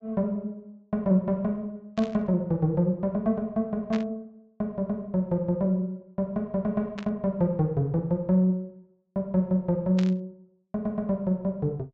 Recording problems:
low-pass filter; nothing above 8 kHz
static burst; 4 times, first at 2 s; peak -7 dB vs average level

